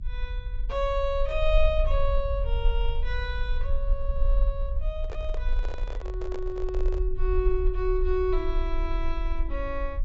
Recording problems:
low-pass filter; nothing above 7.6 kHz
rumble; below 44 Hz, strongest tone 20 Hz, SNR 0 dB
microphone handling noise; from 5 to 7 s; peak -4 dB vs average level

